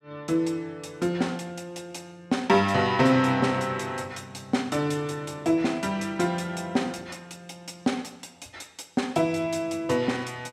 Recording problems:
none

